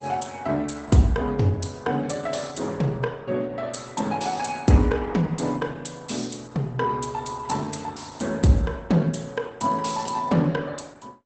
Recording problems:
lossy compression; Opus, log-spectral distance 6 dB, nothing above 8.2 kHz

